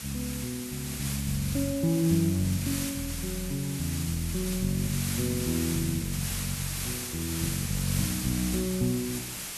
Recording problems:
hiss; slope +1 dB per octave, SNR 4 dB

